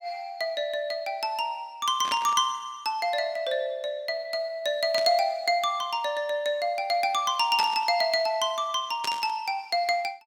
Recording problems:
static burst; 4 times, first at 2 s; peak -2 dB vs average level

